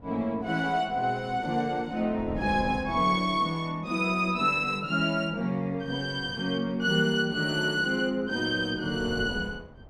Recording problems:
wind on the microphone; below 370 Hz, SNR 18 dB

